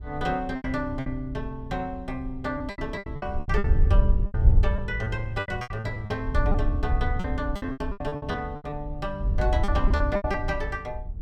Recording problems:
wind on the microphone; below 74 Hz, SNR -2 dB
packet loss; 15% of the sound replaced, filled with repeated pitch periods

